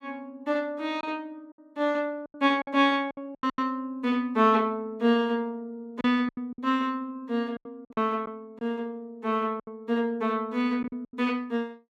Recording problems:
packet loss; 8% of the sound replaced, filled with silence

